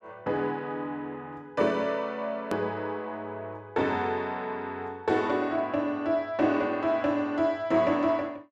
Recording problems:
click at an edit; at 2.5 s

